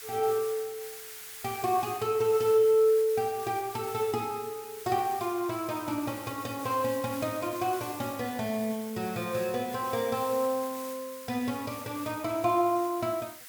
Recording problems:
hiss; SNR 13 dB

